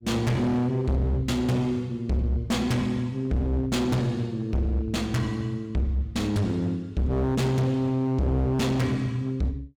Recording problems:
distorted audio; hard clipping, signal-to-distortion ratio 6 dB

